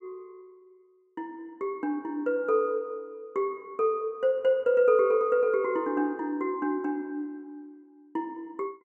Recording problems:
none

